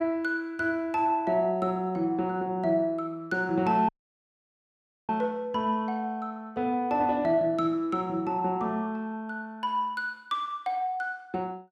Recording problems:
dropout; at 4 s for 1 s

